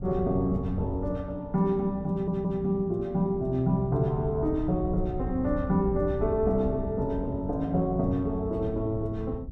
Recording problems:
electrical hum; 60 Hz, harmonics up to 660 Hz, SNR 19 dB
wind noise; below 96 Hz, SNR 10 dB
stutter; at 2 s

